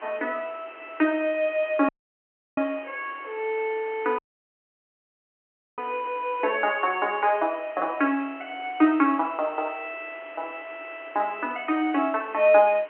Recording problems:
phone line; 280 Hz to 3.3 kHz, G.711
hiss; SNR 21 dB
dropout; at 2 s for 0.5 s and at 4 s for 1.5 s

